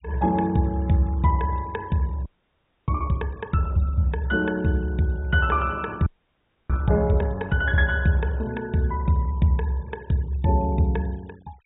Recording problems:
treble missing; nothing above 4 kHz
denoising artefacts; signal-to-artefact ratio 27 dB
frozen audio; at 2.5 s for 0.5 s and at 6 s for 0.5 s

